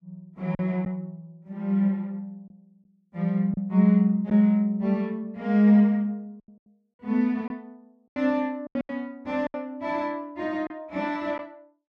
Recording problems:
lost packets; 5% of the sound replaced, filled with silence

